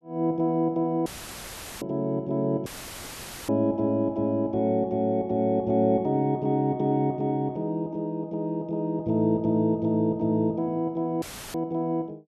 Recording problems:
audio cutting out; at 1 s for 1 s, at 2.5 s for 1 s and at 11 s; filled with static

